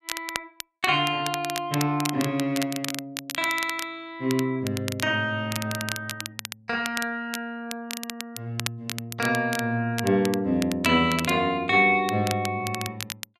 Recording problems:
crackling; vinyl, SNR 9 dB

